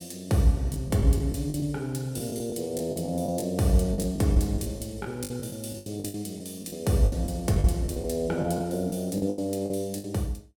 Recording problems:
packet loss; 13% of the sound replaced, filled with the last packet

